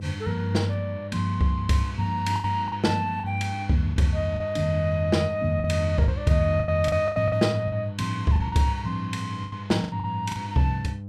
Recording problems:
electrical hum; 50 Hz, harmonics up to 500 Hz, SNR 12 dB
packet loss; 8% of the sound replaced, filled with the last packet

